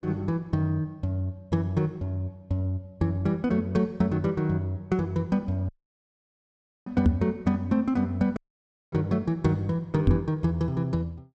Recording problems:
audio cutting out; at 5.5 s for 1 s and at 8.5 s for 0.5 s
microphone bump; at 7 s and at 10 s; peak +9 dB vs average level

